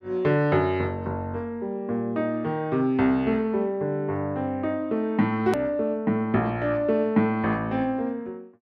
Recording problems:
click at an edit; at 5.5 s

